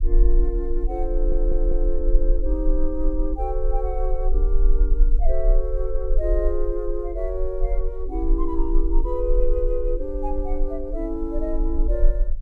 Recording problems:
low-frequency rumble; below 38 Hz, strongest tone 18 Hz, SNR -3 dB
stutter; at 1 s

